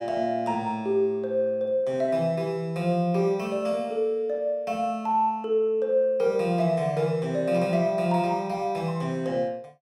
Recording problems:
none

